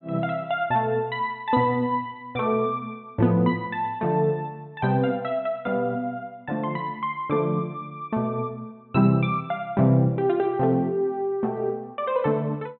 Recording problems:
treble missing; nothing above 4 kHz

